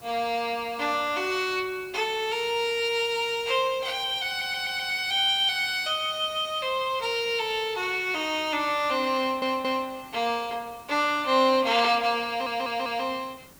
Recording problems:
background hiss; SNR 24 dB
audio stuttering; at 4.5 s, at 9 s and at 12 s

